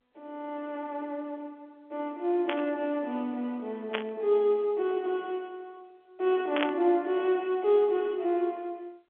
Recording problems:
telephone audio; 260 Hz to 3.7 kHz, G.711
burst of static; at 2.5 s, at 4 s and at 6.5 s; peak +3 dB vs average level

